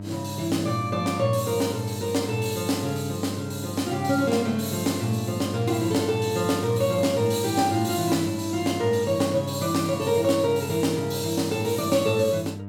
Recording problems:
hum; 50 Hz, harmonics up to 1 kHz, SNR 10 dB

